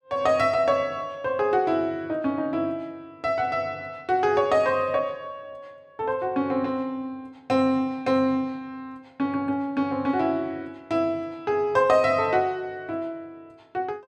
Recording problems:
none

